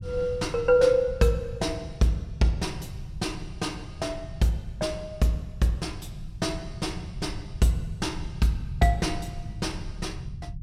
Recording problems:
rumble; below 140 Hz, SNR 12 dB

